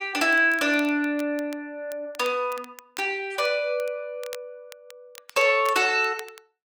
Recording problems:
crackle; vinyl, SNR 22 dB

